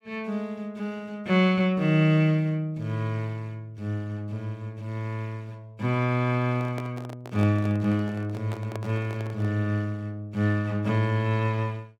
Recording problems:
handling noise; from 6.5 to 9.5 s; peak -6 dB vs average level

